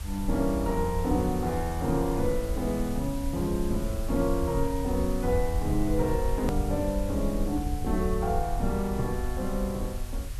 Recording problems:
hiss; slope -1 dB per octave, SNR 16 dB
low-frequency rumble; below 68 Hz, SNR 6 dB
edit click; at 6.5 s

